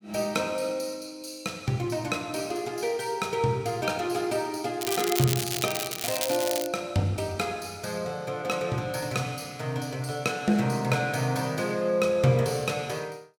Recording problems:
crackling; from 5 to 6.5 s; loose cable, SNR 2 dB

